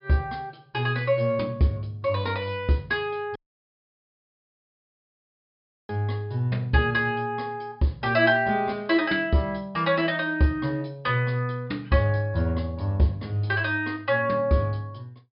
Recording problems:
treble missing; nothing above 5.5 kHz
dropout; at 3.5 s for 2.5 s

